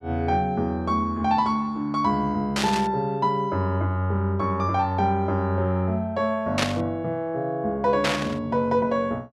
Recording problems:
burst of static; at 2.5 s, at 6.5 s and at 8 s; peak +4 dB vs average level

